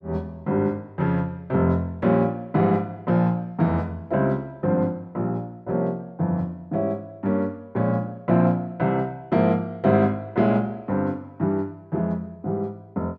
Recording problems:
none

